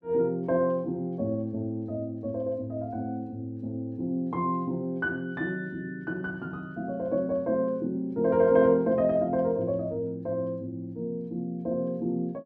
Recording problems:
none

